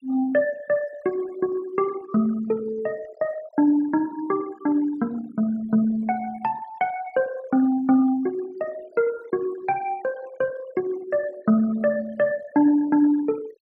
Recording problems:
denoising artefacts; signal-to-artefact ratio 22 dB

